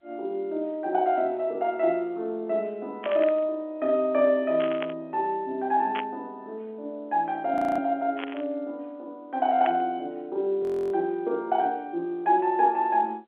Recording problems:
phone line; 280 Hz to 3.8 kHz, G.711
burst of static; 5 times, first at 3 s; peak -3 dB vs average level
audio freezing; at 7.5 s and at 11 s

